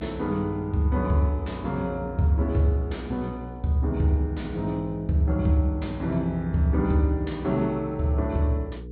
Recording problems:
treble missing; nothing above 4.2 kHz
hum; 60 Hz, harmonics up to 480 Hz, SNR 14 dB

